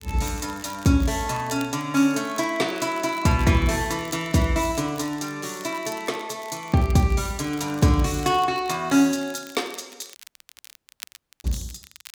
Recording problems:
crackling; vinyl, SNR 21 dB
dropout; at 10 s for 1.5 s

